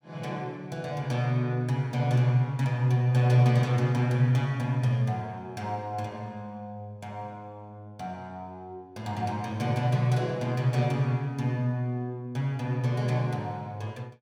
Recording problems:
none

